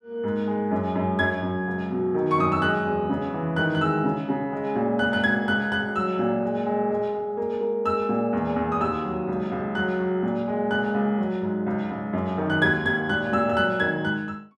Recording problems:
none

